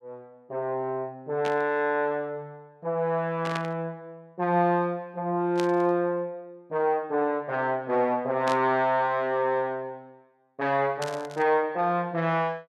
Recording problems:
static burst; 5 times, first at 1.5 s; peak -3 dB vs average level

